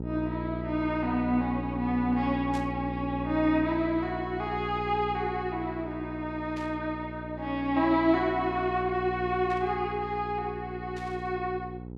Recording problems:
mains hum; 60 Hz, harmonics up to 840 Hz, SNR 8 dB
burst of static; 4 times, first at 2.5 s; peak -12 dB vs average level

